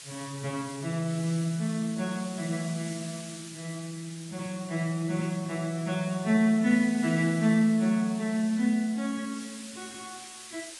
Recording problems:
lossy compression; AAC, log-spectral distance 10 dB, nothing above 10.1 kHz
hiss; slope +3 dB per octave, SNR 15 dB

